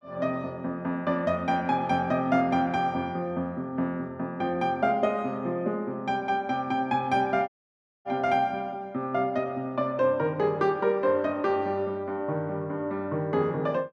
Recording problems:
audio cutting out; at 7.5 s for 0.5 s

